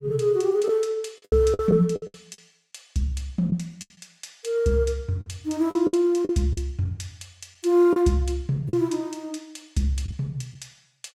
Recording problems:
packet loss; 8% of the sound replaced, filled with the last packet

